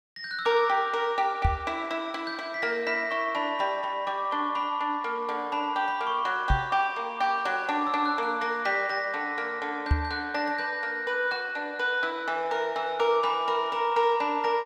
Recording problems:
knock on the microphone; at 1.5 s, at 6.5 s and at 10 s; peak +7 dB vs average level

